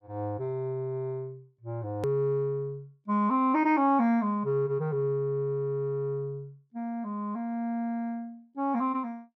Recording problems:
edit click; at 2 s

